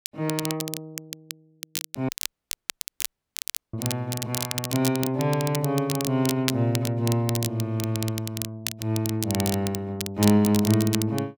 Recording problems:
crackling; vinyl, SNR 7 dB
audio cutting out; at 2 s for 1.5 s

